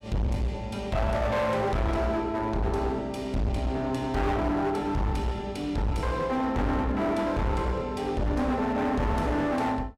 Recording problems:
distorted audio; hard clipping, uneven, signal-to-distortion ratio 7 dB

